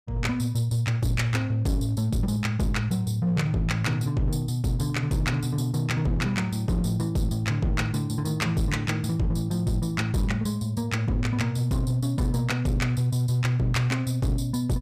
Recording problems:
distorted audio; hard clipping, signal-to-distortion ratio 11 dB

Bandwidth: 15 kHz